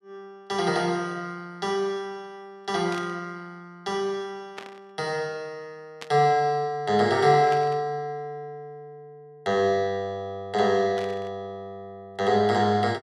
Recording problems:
burst of static; 5 times, first at 3 s; peak -8 dB vs average level

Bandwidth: 14 kHz